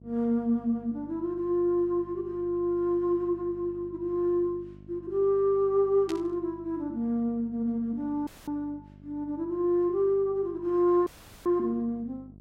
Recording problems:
mains hum; 50 Hz, harmonics up to 700 Hz, SNR 22 dB
burst of static; at 6 s; peak -8 dB vs average level
dropout; at 8.5 s and at 11 s

